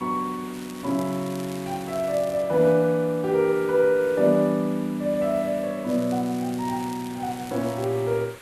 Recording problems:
hiss; SNR 20 dB
crackle; from 0.5 to 2.5 s and from 6 to 8 s; loose cable, SNR 21 dB

